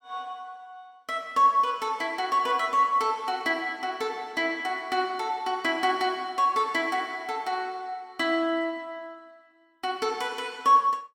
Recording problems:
none

